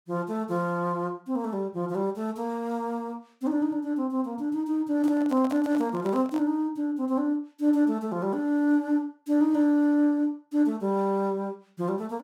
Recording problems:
microphone handling noise; from 5 to 6.5 s; peak -6 dB vs average level

